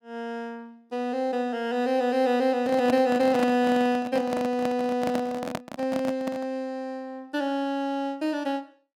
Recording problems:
microphone handling noise; from 2.5 to 6.5 s; peak 0 dB vs average level

